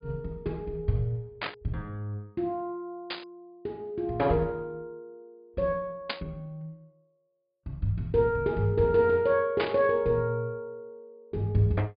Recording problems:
treble missing; nothing above 5 kHz
burst of static; 4 times, first at 1.5 s; peak +2 dB vs average level

